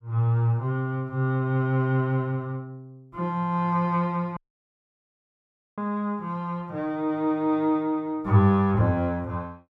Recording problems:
audio cutting out; at 4.5 s for 1.5 s

